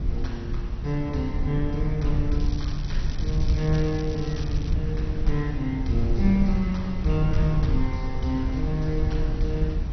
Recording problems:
codec artefacts; MP2, log-spectral distance 2 dB, nothing above 6 kHz
hiss; slope -5 dB per octave, SNR 15 dB
rumble; below 84 Hz, SNR 1 dB
crackle; from 2.5 to 4.5 s; loose cable, SNR 16 dB

